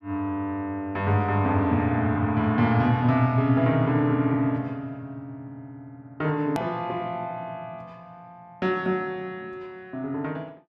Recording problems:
hard cut with a click; at 6.5 s

